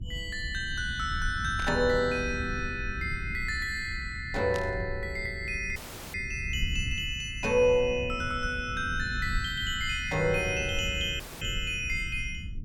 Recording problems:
low-frequency rumble; below 100 Hz, SNR 9 dB
static burst; at 1.5 s and at 4.5 s; peak -4 dB vs average level
dropout; at 6 s and at 11 s

